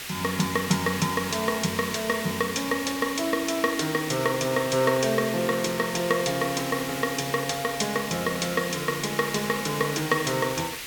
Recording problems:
hiss; SNR 8 dB

